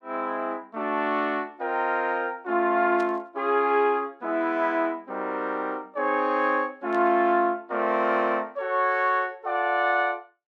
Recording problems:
static burst; at 3 s and at 7 s; peak -15 dB vs average level

